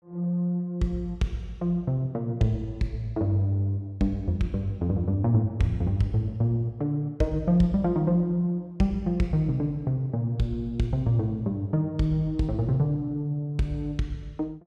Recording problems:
none

